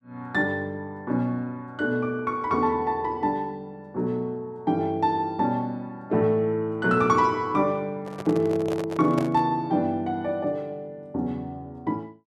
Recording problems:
microphone handling noise; from 8 to 9.5 s; peak -1 dB vs average level

